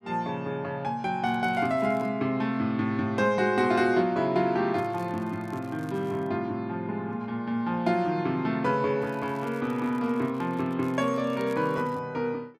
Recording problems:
crackling; at 1.5 s, from 5 to 6.5 s and from 9 to 12 s; loose cable, SNR 28 dB

